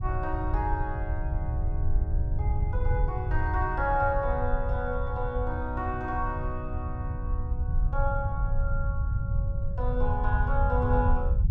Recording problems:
low-frequency rumble; below 88 Hz, SNR -2 dB

